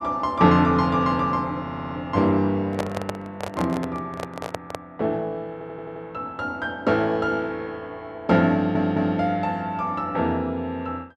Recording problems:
stutter; at 1.5 s, at 5.5 s and at 8.5 s
microphone handling noise; from 2.5 to 5 s; peak +1 dB vs average level

